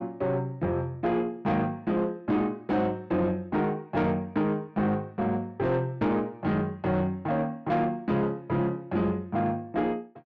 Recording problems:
distorted audio; soft clipping, signal-to-distortion ratio 11 dB

